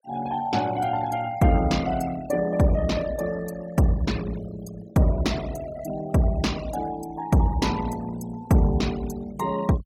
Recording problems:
denoising artefacts; signal-to-artefact ratio 18 dB

